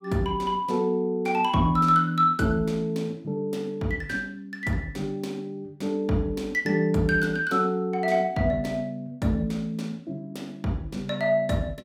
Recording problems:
none

